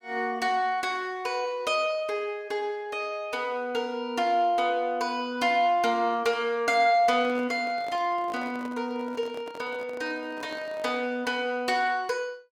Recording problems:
handling noise; from 7 to 11 s; peak -11 dB vs average level

